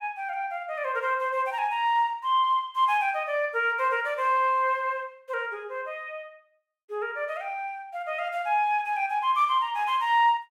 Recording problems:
none

